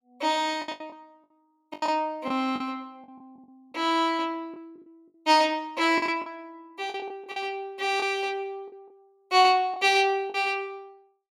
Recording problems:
packet loss; 9% of the sound replaced, filled with the last packet

